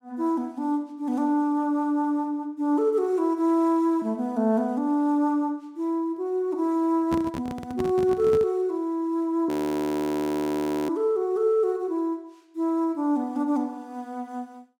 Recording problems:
microphone handling noise; from 7 to 8.5 s; peak -1 dB vs average level
audio freezing; at 9.5 s for 1.5 s

